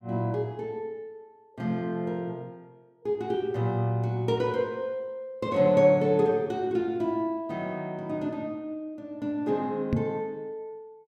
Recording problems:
knock on the microphone; at 10 s; peak +5 dB vs average level

